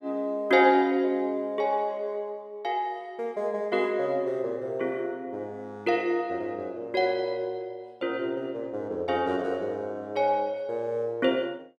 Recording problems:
none

